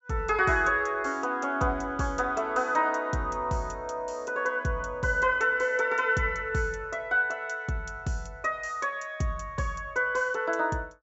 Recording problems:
treble missing; nothing above 8 kHz

